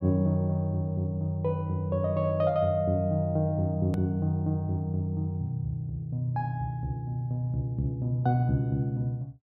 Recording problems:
hard cut with a click; at 4 s

